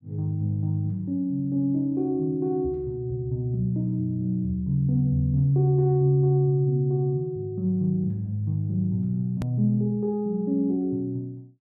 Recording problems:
edit click; at 9.5 s

